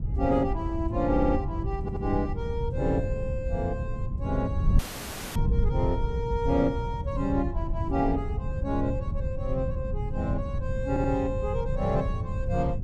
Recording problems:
wind noise; below 110 Hz, SNR 1 dB
stutter; at 1 s, at 2 s and at 11 s
dropout; at 5 s for 0.5 s

